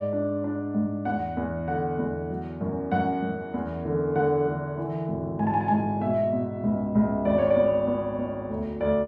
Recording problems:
none

